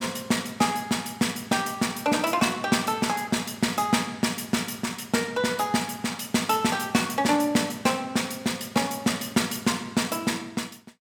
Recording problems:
none

